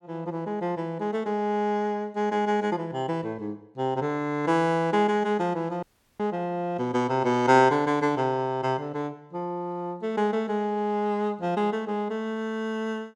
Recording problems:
dropout; at 6 s

